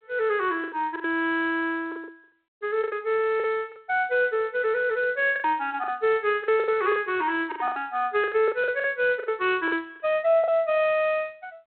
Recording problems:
telephone audio; 340 Hz to 3.3 kHz, G.726
packet loss; 11% of the sound replaced, filled with the last packet

